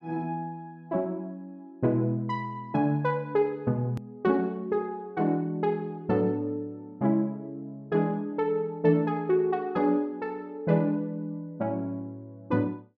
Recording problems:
click at an edit; at 4 s

